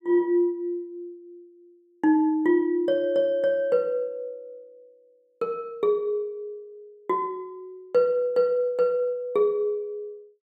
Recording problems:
none

